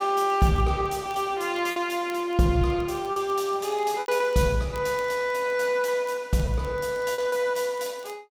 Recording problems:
crackling; vinyl, SNR 29 dB
packet loss; 6% of the sound replaced, filled with repeated pitch periods

